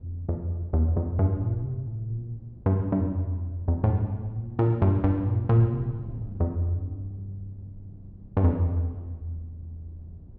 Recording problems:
wind noise; below 160 Hz, SNR 20 dB

